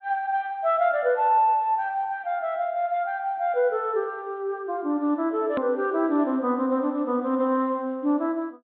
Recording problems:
low-pass filter; nothing above 4 kHz
hard cut with a click; at 5.5 s

